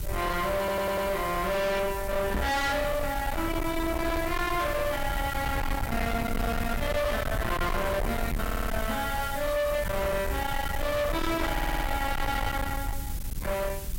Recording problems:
distorted audio; hard clipping, signal-to-distortion ratio 7 dB
background hiss; slope +1 dB per octave, SNR 13 dB
rumble; below 510 Hz, SNR 5 dB
stutter; at 0.5 s, at 8.5 s and at 12 s
microphone thump; at 2.5 s and at 8.5 s; peak +2 dB vs average level

